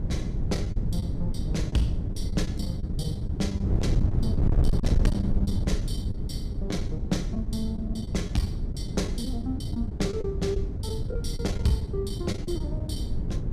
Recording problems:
distorted audio; hard clipping, uneven, signal-to-distortion ratio 11 dB
electrical hum; 60 Hz, harmonics up to 420 Hz, SNR 12 dB
wind noise; below 130 Hz, SNR -2 dB
lost packets; 10% of the sound replaced, filled with the last packet

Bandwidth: 14.5 kHz